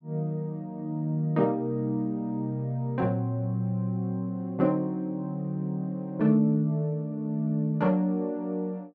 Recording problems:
none

